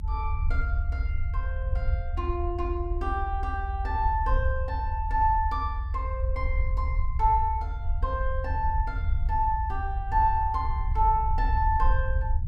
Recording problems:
rumble; below 76 Hz, SNR 1 dB

